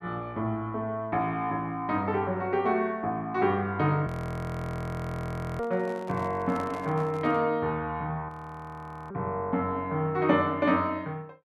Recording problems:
audio freezing; at 4 s for 1.5 s and at 8.5 s for 1 s
microphone handling noise; from 5.5 to 7.5 s; peak -8 dB vs average level

